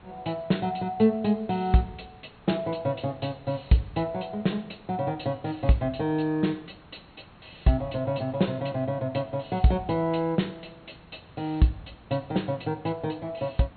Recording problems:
treble missing; nothing above 4.3 kHz
hiss; SNR 24 dB

